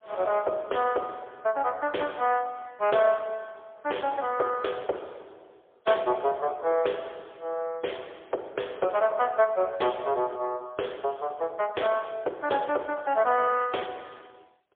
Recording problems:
phone line; 340 Hz to 3.4 kHz, AMR-NB, then MP3

